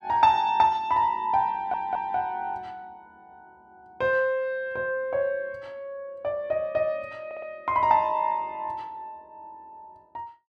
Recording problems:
audio stuttering; at 1.5 s and at 7.5 s

